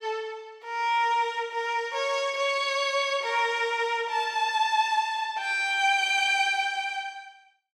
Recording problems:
none

